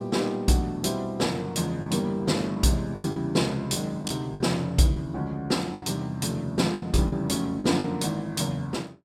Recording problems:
lost packets; 7% of the sound replaced, filled with the last packet

